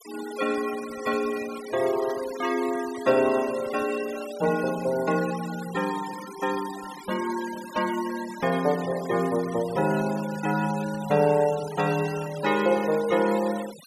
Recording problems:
denoising artefacts; signal-to-artefact ratio 15 dB

